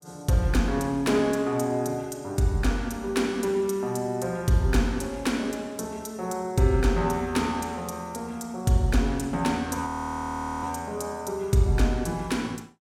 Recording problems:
frozen audio; at 10 s for 1 s

